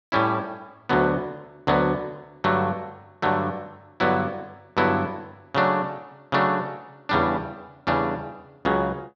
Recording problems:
none

